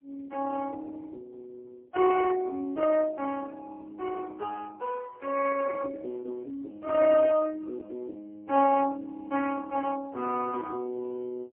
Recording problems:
phone line; 280 Hz to 2.2 kHz, AMR-NB, then MP3

